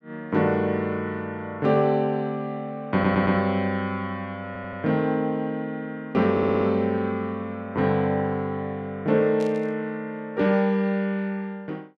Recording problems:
audio stuttering; at 3 s, at 4.5 s and at 6.5 s
static burst; at 9.5 s; peak -13 dB vs average level

